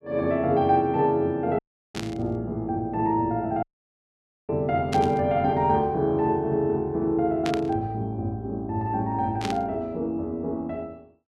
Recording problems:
audio cutting out; at 1.5 s and at 3.5 s for 1 s
burst of static; 4 times, first at 2 s; peak -3 dB vs average level

